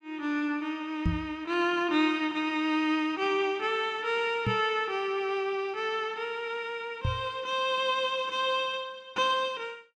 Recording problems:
knock on the microphone; at 1 s, at 4.5 s and at 7 s; peak +4 dB vs average level

